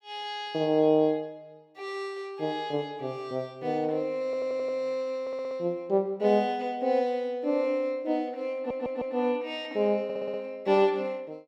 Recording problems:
audio stuttering; 4 times, first at 4 s

